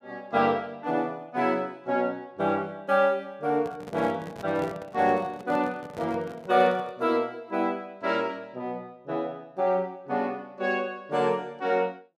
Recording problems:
microphone handling noise; from 3.5 to 7 s; peak -6 dB vs average level

